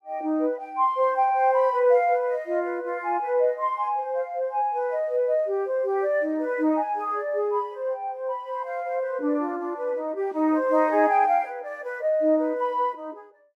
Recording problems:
none

